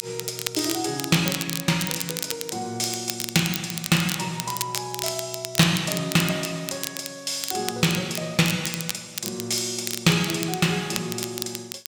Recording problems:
crackling; vinyl, SNR 6 dB

